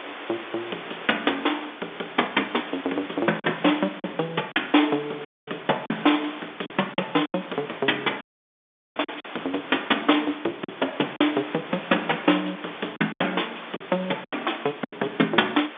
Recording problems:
telephone audio; 240 Hz to 3.6 kHz, G.711
hiss; SNR 13 dB
packet loss; 6% of the sound replaced, filled with silence
audio cutting out; at 5.5 s and at 8 s for 1 s

